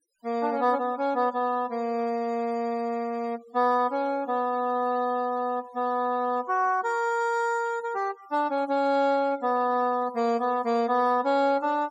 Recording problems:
denoising artefacts; signal-to-artefact ratio 23 dB

